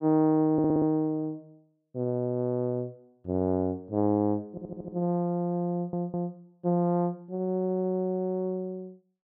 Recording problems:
stutter; 4 times, first at 0.5 s

